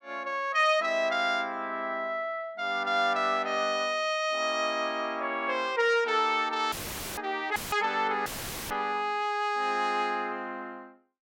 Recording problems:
audio cutting out; at 6.5 s, at 7.5 s and at 8.5 s; filled with static

